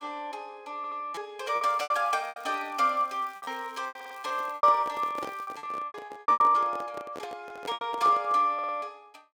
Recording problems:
packet loss; 12% of the sound replaced, filled with repeated pitch periods
stutter; 4 times, first at 1 s
crackle; from 1.5 to 5.5 s; loose cable, SNR 29 dB
handling noise; from 4.5 to 8.5 s; peak -6 dB vs average level

